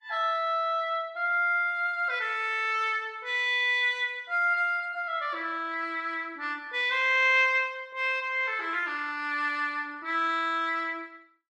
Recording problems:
lossy codec; Vorbis, log-spectral distance 2 dB, nothing above 12.7 kHz

